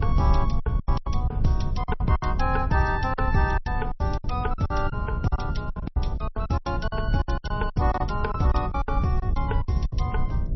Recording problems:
codec artefacts; MP3, log-spectral distance 2 dB, nothing above 5.8 kHz
electrical hum; 60 Hz, harmonics up to 660 Hz, SNR 10 dB
low-frequency rumble; below 96 Hz, SNR 1 dB
packet loss; 17% of the sound replaced, filled with silence

